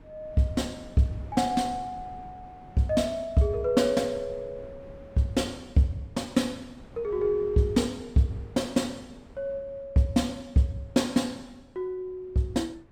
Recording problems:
wind on the microphone; below 340 Hz, SNR 22 dB

